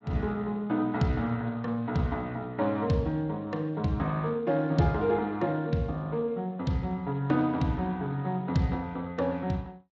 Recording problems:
lossy codec; Speex, log-spectral distance 2 dB, nothing above 7.3 kHz

